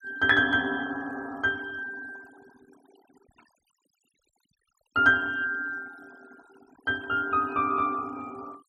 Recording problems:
denoising artefacts; signal-to-artefact ratio 28 dB

